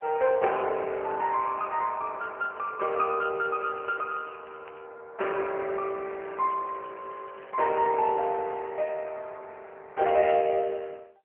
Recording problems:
telephone audio; 340 Hz to 2.8 kHz, AMR-NB
crackling; from 3.5 to 5 s and from 6 to 8 s; loose cable, SNR 28 dB

